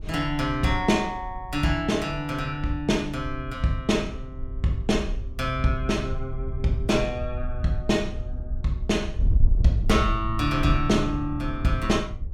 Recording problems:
wind noise; below 68 Hz, SNR 6 dB

